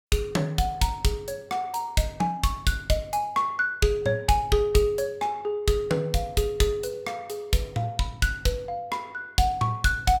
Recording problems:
none

